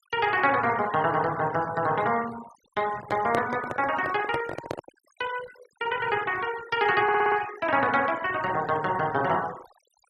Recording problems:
denoising artefacts; signal-to-artefact ratio 16 dB
microphone handling noise; from 3 to 5 s; peak 0 dB vs average level
audio stuttering; at 7 s

